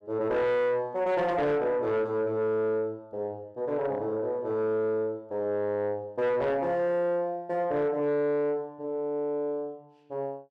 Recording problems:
distortion; soft clipping, signal-to-distortion ratio 12 dB

